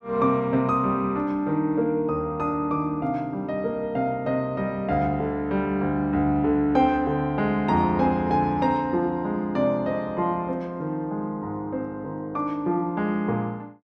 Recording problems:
none

